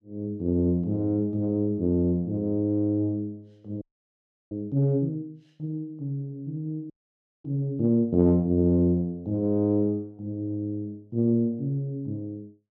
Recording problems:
audio freezing; at 4 s for 0.5 s and at 7 s for 0.5 s

